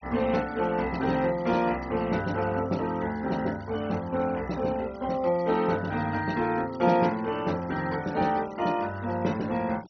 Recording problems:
treble missing; nothing above 6.1 kHz
denoising artefacts; signal-to-artefact ratio 19 dB

